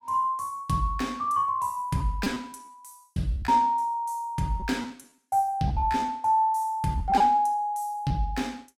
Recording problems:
packet loss; 11% of the sound replaced, filled with repeated pitch periods

